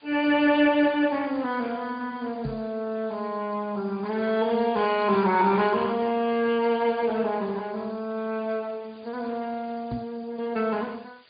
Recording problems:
treble cut off; nothing above 4.8 kHz
lossy codec; Speex, log-spectral distance 8 dB
background hiss; SNR 27 dB
microphone bump; at 2.5 s and at 10 s; peak -2 dB vs average level
crackling; from 4 to 5.5 s; loose cable, SNR 27 dB

